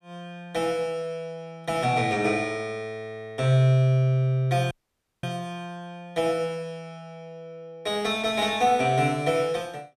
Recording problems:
dropout; at 4.5 s for 0.5 s

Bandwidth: 14.5 kHz